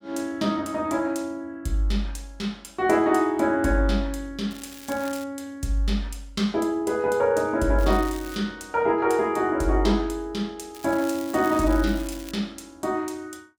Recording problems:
crackle; at 4.5 s, at 8 s and from 11 to 12 s; loose cable, SNR 17 dB

